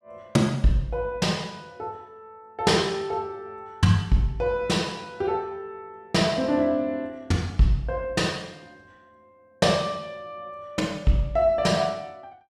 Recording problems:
none

